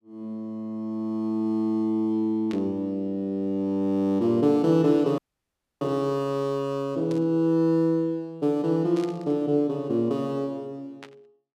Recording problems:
burst of static; 4 times, first at 2.5 s; peak -12 dB vs average level
frozen audio; at 5 s for 0.5 s

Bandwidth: 14 kHz